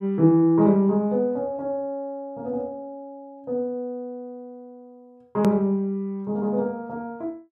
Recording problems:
hard cut with a click; at 5.5 s

